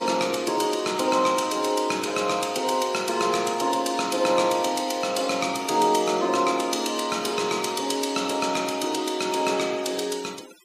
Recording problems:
denoising artefacts; signal-to-artefact ratio 19 dB

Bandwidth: 15 kHz